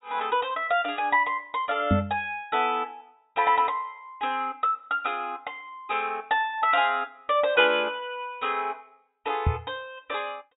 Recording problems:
treble cut off; nothing above 4 kHz
microphone bump; at 2 s and at 9.5 s; peak +6 dB vs average level

